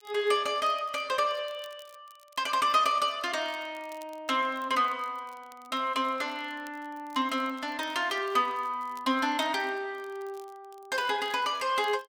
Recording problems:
crackle; vinyl, SNR 29 dB

